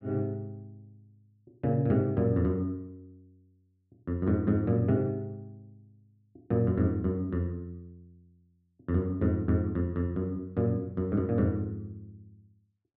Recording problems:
none

